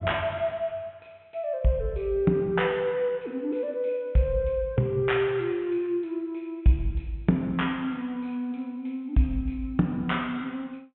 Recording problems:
low-pass filter; nothing above 3.5 kHz

